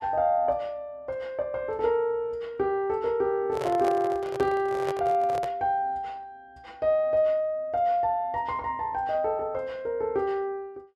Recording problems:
handling noise; from 3.5 to 5.5 s; peak -3 dB vs average level

